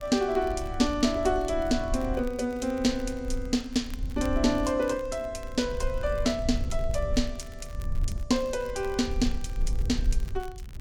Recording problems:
rumble; below 60 Hz, SNR 8 dB
crackle; vinyl, SNR 25 dB

